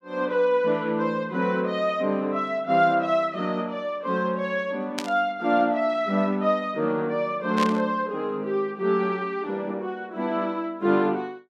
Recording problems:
burst of static; at 5 s and at 7.5 s; peak -1 dB vs average level

